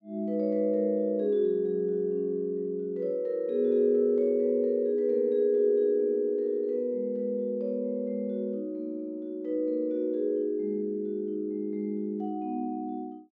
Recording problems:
none

